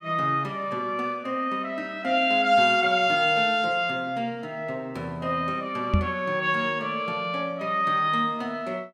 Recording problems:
knock on the microphone; at 6 s; peak +6 dB vs average level

